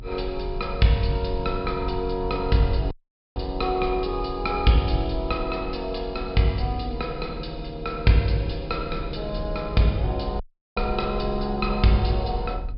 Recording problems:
low-pass filter; nothing above 5.2 kHz
rumble; below 58 Hz, strongest tone 38 Hz, SNR 10 dB
audio cutting out; at 3 s and at 10 s

